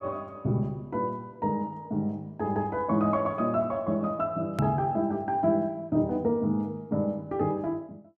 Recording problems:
click at an edit; at 4.5 s

